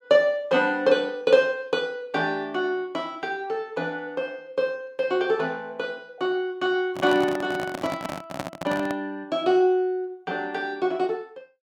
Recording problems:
microphone handling noise; from 7 to 9 s; peak -1 dB vs average level

